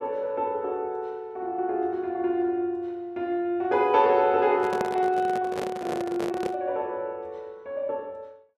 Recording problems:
microphone handling noise; from 4.5 to 6.5 s; peak +1 dB vs average level

